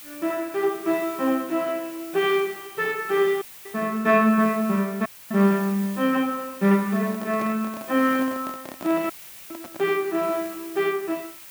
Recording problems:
background hiss; slope +1 dB per octave, SNR 16 dB
dropout; at 3.5 s, at 5 s and at 9 s
handling noise; from 7 to 10 s; peak -9 dB vs average level

